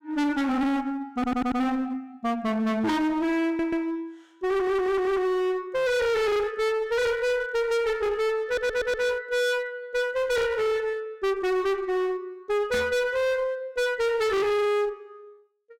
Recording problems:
distorted audio; hard clipping, uneven, signal-to-distortion ratio 4 dB
stutter; 4 times, first at 1 s
microphone bump; at 13 s; peak 0 dB vs average level

